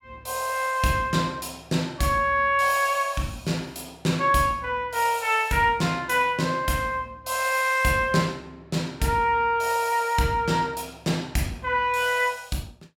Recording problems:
none

